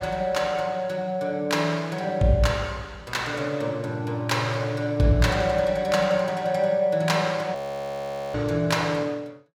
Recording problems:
frozen audio; at 7.5 s for 1 s

